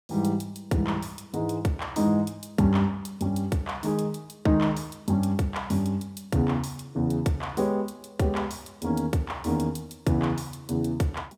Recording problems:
none

